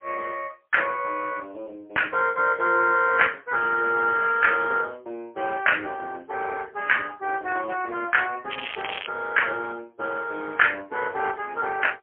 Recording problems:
telephone audio; 370 Hz to 3.2 kHz, AMR-NB, then MP3
crackle; at 8.5 s; loose cable, SNR 10 dB

